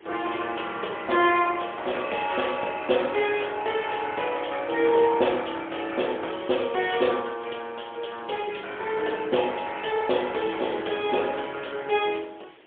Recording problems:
telephone audio; 280 Hz to 3.5 kHz, AMR-NB, then MP3
background hiss; SNR 23 dB

